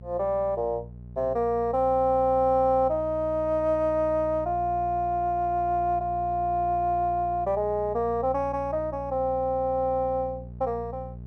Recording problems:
mains hum; 60 Hz, harmonics up to 480 Hz, SNR 15 dB

